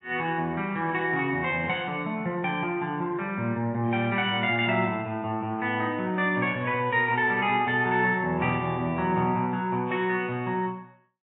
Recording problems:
codec artefacts; AAC, log-spectral distance 2 dB

